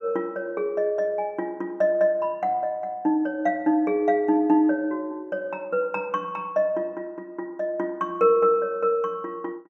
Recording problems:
none

